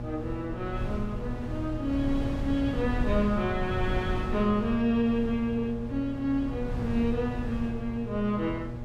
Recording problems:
hum; 60 Hz, harmonics up to 1.1 kHz, SNR 9 dB
wind noise; below 140 Hz, SNR 7 dB

